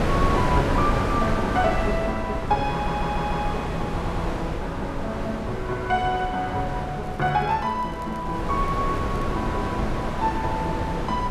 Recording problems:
wind on the microphone; below 680 Hz, SNR 1 dB
audio stuttering; at 2.5 s and at 4 s
crackle; from 7 to 9.5 s; loose cable, SNR 29 dB

